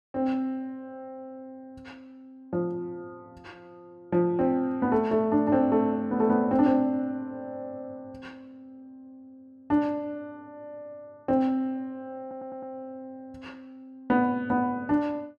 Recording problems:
audio stuttering; at 12 s

